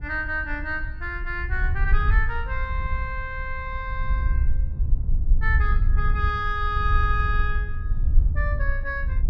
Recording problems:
low-frequency rumble; below 66 Hz, SNR -2 dB

